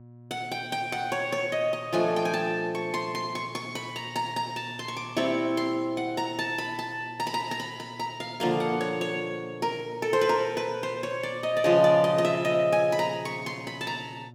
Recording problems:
electrical hum; 60 Hz, harmonics up to 960 Hz, SNR 21 dB

